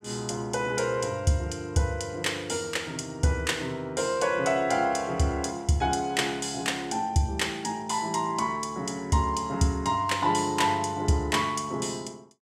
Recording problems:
none

